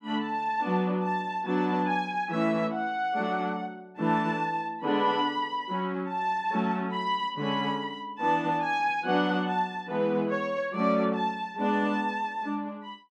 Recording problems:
none

